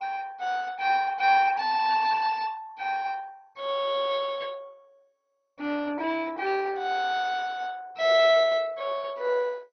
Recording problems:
lossy codec; MP2, log-spectral distance 3 dB, nothing above 6 kHz

